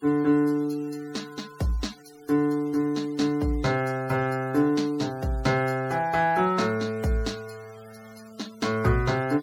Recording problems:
noise reduction artefacts; signal-to-artefact ratio 24 dB

